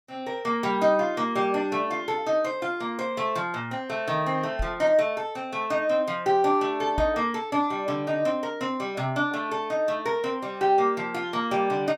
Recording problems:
knock on the microphone; at 4.5 s and at 7 s; peak -1 dB vs average level

